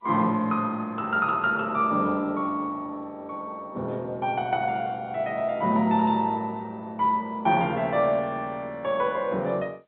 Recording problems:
phone line; 110 Hz to 3.8 kHz, G.711

